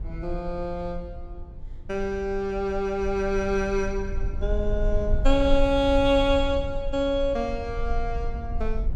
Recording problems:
rumble; below 48 Hz, strongest tone 24 Hz, SNR 7 dB

